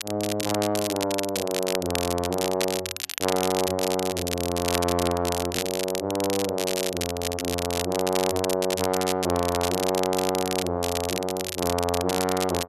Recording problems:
crackling; vinyl, SNR 4 dB

